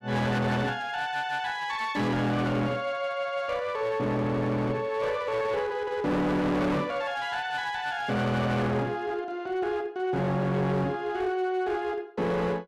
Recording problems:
distorted audio; hard clipping, uneven, signal-to-distortion ratio 7 dB

